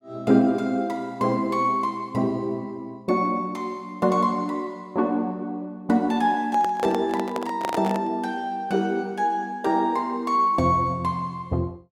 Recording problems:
handling noise; from 6.5 to 8 s; peak -1 dB vs average level

